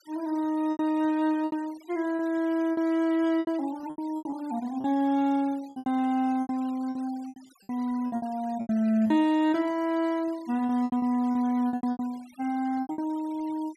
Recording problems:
denoising artefacts; signal-to-artefact ratio 24 dB
lost packets; 13% of the sound replaced, filled with repeated pitch periods

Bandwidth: 13.5 kHz